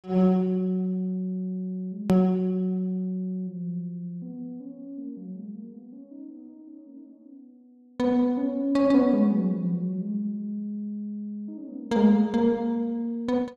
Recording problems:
hard cut with a click; at 2 s

